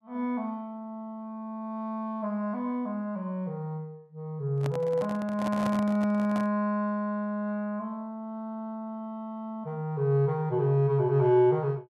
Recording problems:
microphone handling noise; from 4.5 to 6.5 s; peak -2 dB vs average level

